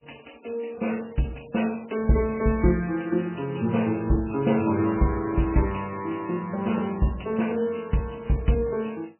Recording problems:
lossy compression; MP3, log-spectral distance 7 dB, nothing above 2.9 kHz

